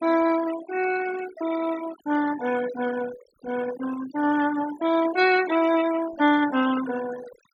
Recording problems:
denoising artefacts; signal-to-artefact ratio 12 dB

